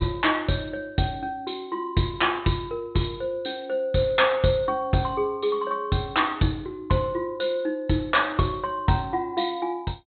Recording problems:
treble cut off; nothing above 4 kHz

